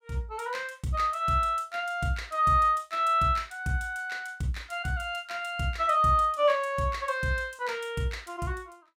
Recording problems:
none

